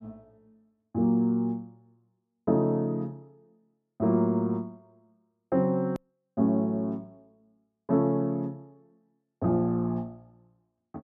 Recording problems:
click at an edit; at 6 s

